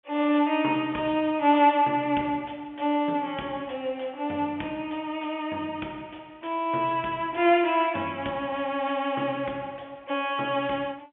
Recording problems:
phone line; 220 Hz to 3.4 kHz, G.711

